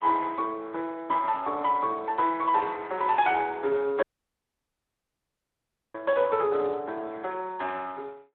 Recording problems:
telephone audio; 300 Hz to 4 kHz, Speex
audio cutting out; at 4 s for 2 s

